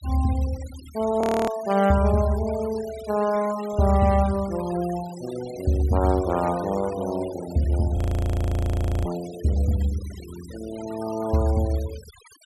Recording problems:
denoising artefacts; signal-to-artefact ratio 18 dB
frozen audio; at 1 s and at 8 s for 1 s

